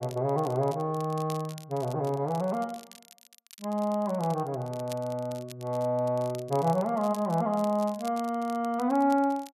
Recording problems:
crackle; vinyl, SNR 21 dB

